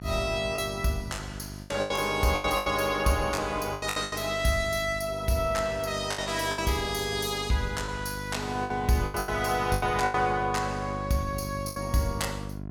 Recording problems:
hum; 50 Hz, harmonics up to 1.1 kHz, SNR 11 dB
lost packets; 10% of the sound replaced, filled with the last packet

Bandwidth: 18 kHz